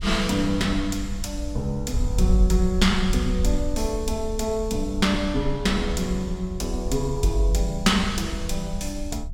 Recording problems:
wind noise; below 64 Hz, SNR 7 dB

